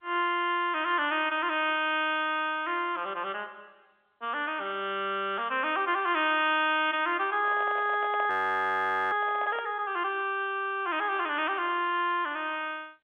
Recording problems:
telephone audio; 260 Hz to 3.6 kHz, G.711
microphone handling noise; from 7.5 to 9.5 s; peak -7 dB vs average level
audio freezing; at 8.5 s for 1 s

